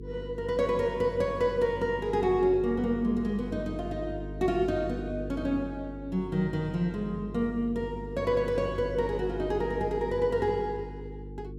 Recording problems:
electrical hum; 50 Hz, harmonics up to 450 Hz, SNR 11 dB

